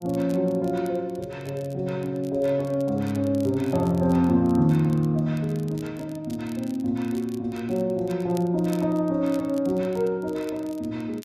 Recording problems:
crackling; vinyl, SNR 25 dB

